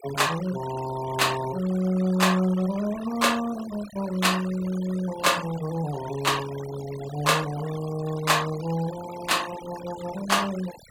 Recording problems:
denoising artefacts; signal-to-artefact ratio 15 dB

